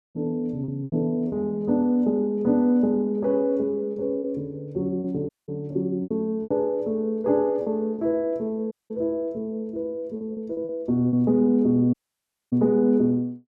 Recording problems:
packet loss; 6% of the sound replaced, filled with repeated pitch periods
dropout; at 5.5 s, at 8.5 s and at 12 s for 0.5 s

